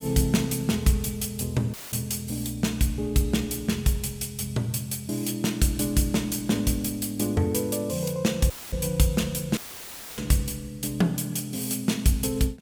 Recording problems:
audio cutting out; at 1.5 s, at 8.5 s and at 9.5 s for 0.5 s; filled with static

